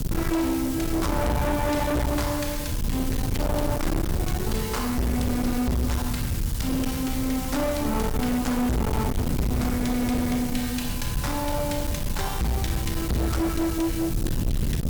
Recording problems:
distortion; hard clipping, signal-to-distortion ratio 6 dB
hiss; SNR 9 dB
low-frequency rumble; below 190 Hz, SNR 4 dB

